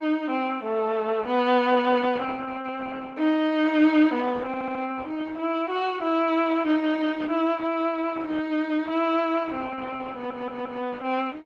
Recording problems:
lossy compression; Opus, log-spectral distance 3 dB
audio stuttering; at 4.5 s and at 10 s

